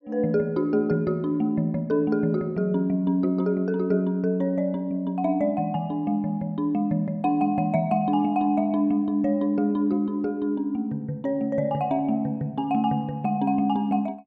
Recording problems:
none

